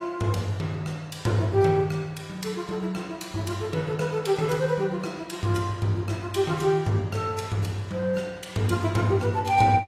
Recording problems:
lossy codec; AAC, log-spectral distance 3 dB

